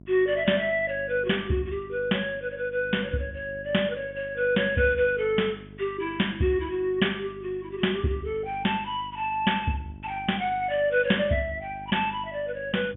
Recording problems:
treble cut off; nothing above 3.3 kHz
electrical hum; 50 Hz, harmonics up to 700 Hz, SNR 19 dB

